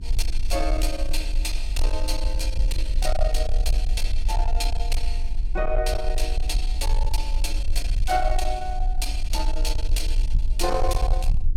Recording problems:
distorted audio; soft clipping, signal-to-distortion ratio 11 dB
electrical hum; 50 Hz, harmonics up to 400 Hz, SNR 17 dB
rumble; below 44 Hz, strongest tone 18 Hz, SNR -2 dB

